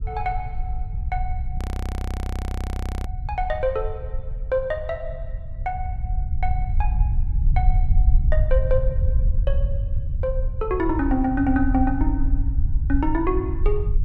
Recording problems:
low-frequency rumble; below 68 Hz, SNR -1 dB
frozen audio; at 1.5 s for 1.5 s

